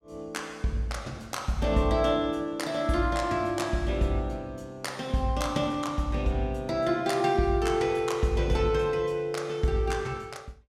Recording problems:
none

